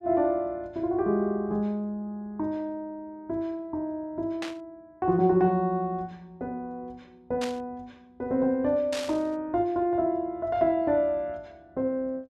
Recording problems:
static burst; at 4.5 s, at 7.5 s and at 9 s; peak -3 dB vs average level

